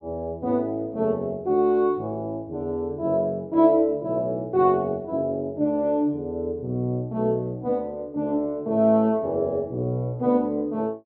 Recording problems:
none

